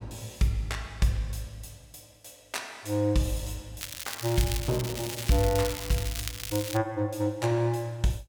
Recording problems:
crackle; from 4 to 7 s; loose cable, SNR 6 dB

